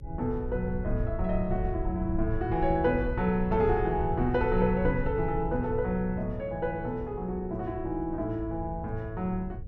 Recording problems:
hum; 60 Hz, harmonics up to 540 Hz, SNR 21 dB
low-frequency rumble; below 88 Hz, SNR 8 dB

